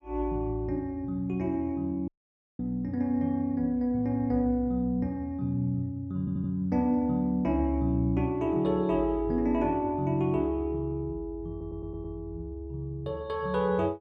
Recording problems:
audio cutting out; at 2 s for 0.5 s
audio stuttering; at 6 s and at 12 s

